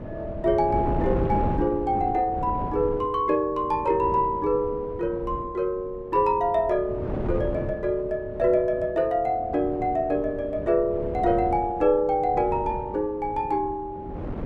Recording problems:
wind noise; below 370 Hz, SNR 10 dB

